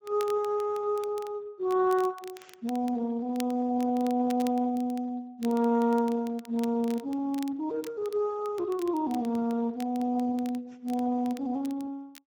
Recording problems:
lossy codec; Speex, log-spectral distance 2 dB
crackle; vinyl, SNR 22 dB

